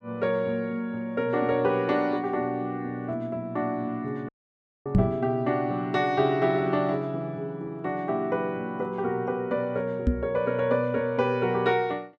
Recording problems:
audio cutting out; at 4.5 s for 0.5 s
microphone bump; at 5 s and at 10 s; peak +9 dB vs average level

